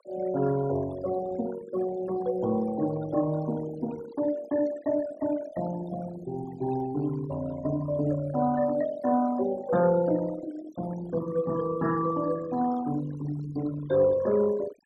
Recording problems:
noise reduction artefacts; signal-to-artefact ratio 15 dB

